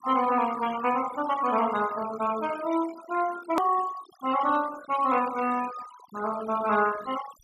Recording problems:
denoising artefacts; signal-to-artefact ratio 15 dB
hard cut with a click; at 3.5 s

